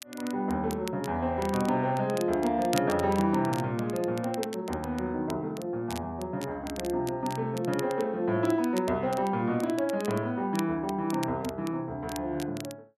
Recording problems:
crackling; vinyl, SNR 16 dB

